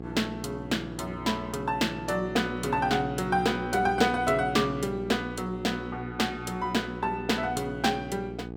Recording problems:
electrical hum; 60 Hz, harmonics up to 1.2 kHz, SNR 10 dB

